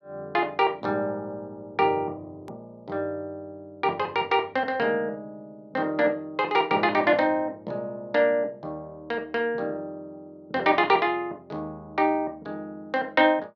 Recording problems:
edit click; at 2.5 s

